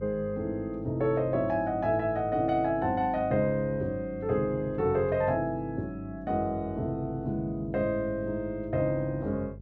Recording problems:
electrical hum; 50 Hz, harmonics up to 450 Hz, SNR 16 dB

